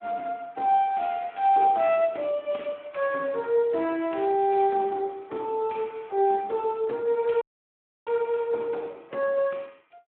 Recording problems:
telephone audio; 280 Hz to 3.7 kHz, Speex
audio cutting out; at 7.5 s for 0.5 s

